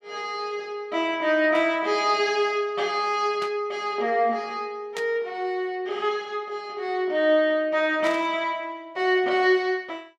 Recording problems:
burst of static; 4 times, first at 1.5 s; peak -7 dB vs average level

